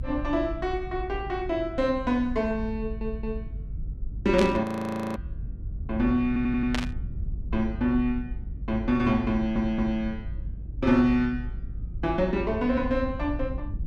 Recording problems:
low-frequency rumble; below 82 Hz, SNR 9 dB
audio stuttering; at 3 s, at 6.5 s and at 9.5 s
burst of static; at 4.5 s and at 6.5 s; peak +1 dB vs average level
frozen audio; at 4.5 s for 0.5 s

